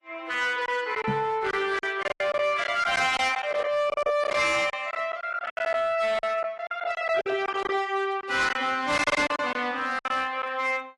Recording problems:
codec artefacts; AAC, log-spectral distance 3 dB, nothing above 11.3 kHz
distorted audio; hard clipping, signal-to-distortion ratio 12 dB
packet loss; 12% of the sound replaced, filled with silence
knock on the microphone; at 1 s; peak -1 dB vs average level

